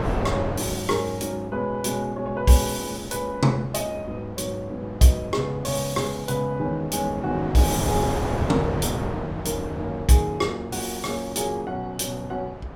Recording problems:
wind on the microphone; below 710 Hz, SNR 8 dB

